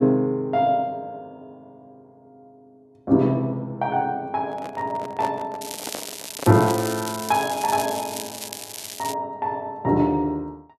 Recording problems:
handling noise; from 4.5 to 7 s; peak -4 dB vs average level
crackle; from 5.5 to 9 s; loose cable, SNR 9 dB

